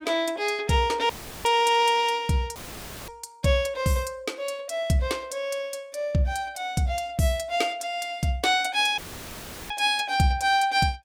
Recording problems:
dropout; at 1 s, at 2.5 s for 0.5 s and at 9 s for 0.5 s; filled with static

